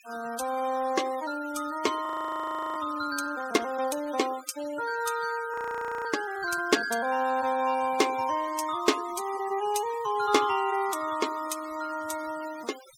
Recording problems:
denoising artefacts; signal-to-artefact ratio 16 dB
frozen audio; at 2 s for 0.5 s and at 5.5 s for 0.5 s

